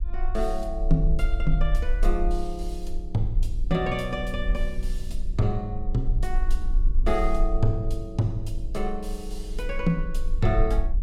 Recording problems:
rumble; below 40 Hz, strongest tone 22 Hz, SNR 1 dB
wind on the microphone; below 230 Hz, SNR 18 dB

